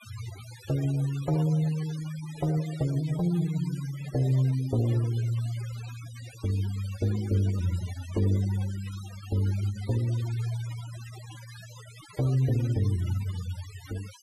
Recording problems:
denoising artefacts; signal-to-artefact ratio 17 dB

